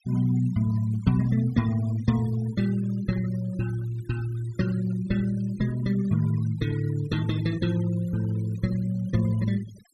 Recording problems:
noise reduction artefacts; signal-to-artefact ratio 20 dB

